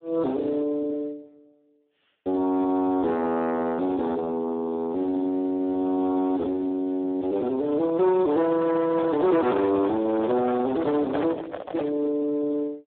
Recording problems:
phone line; 390 Hz to 3 kHz, Speex
distorted audio; soft clipping, signal-to-distortion ratio 9 dB
microphone handling noise; from 8.5 to 12 s; peak -1 dB vs average level

